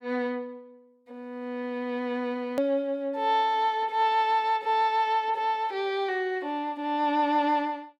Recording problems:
hard cut with a click; at 2.5 s

